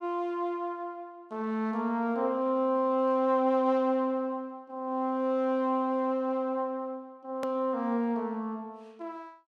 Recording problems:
click at an edit; at 7.5 s

